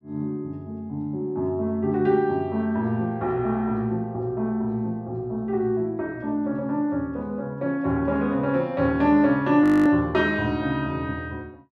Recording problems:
audio freezing; at 9.5 s

